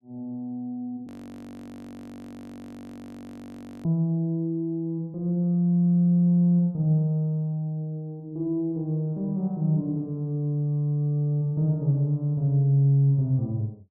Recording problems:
audio freezing; at 1 s for 3 s

